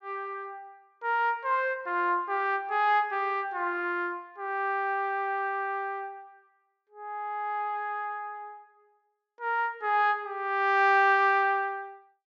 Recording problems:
low-pass filter; nothing above 8 kHz

